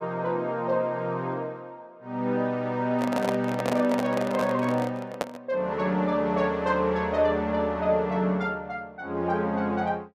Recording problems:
handling noise; from 3 to 5.5 s; peak +2 dB vs average level

